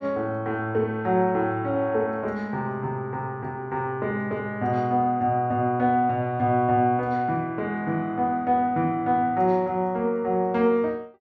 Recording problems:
none

